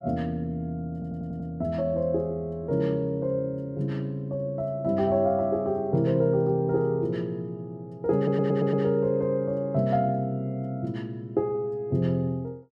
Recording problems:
stutter; at 1 s and at 8 s

